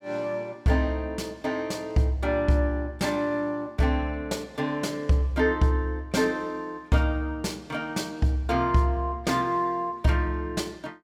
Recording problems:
none

